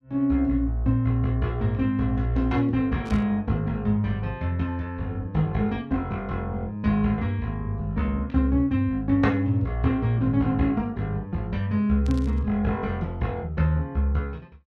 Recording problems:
static burst; at 3 s and at 12 s; peak -13 dB vs average level

